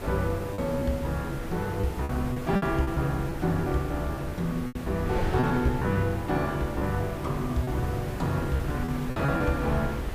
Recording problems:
hiss; slope +1 dB per octave, SNR 22 dB
wind on the microphone; below 420 Hz, SNR 7 dB
packet loss; 7% of the sound replaced, filled with repeated pitch periods

